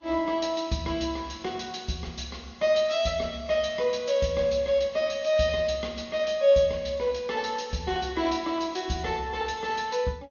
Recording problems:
codec artefacts; Vorbis, then MP2, log-spectral distance 3 dB, nothing above 6.5 kHz

